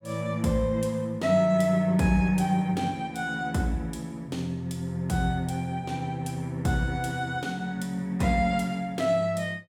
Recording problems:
none

